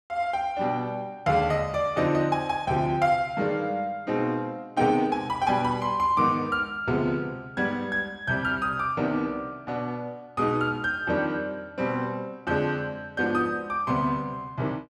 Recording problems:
none

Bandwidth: 14 kHz